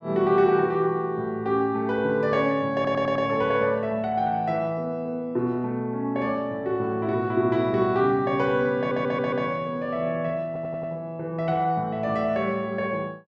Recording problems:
stutter; at 2.5 s, at 9 s and at 10 s

